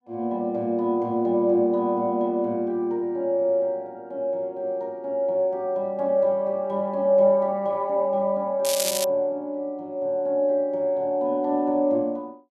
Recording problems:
crackle; at 8.5 s; loose cable, SNR 4 dB

